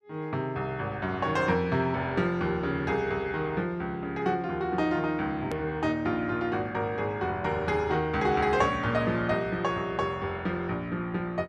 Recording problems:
edit click; at 5.5 s

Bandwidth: 12.5 kHz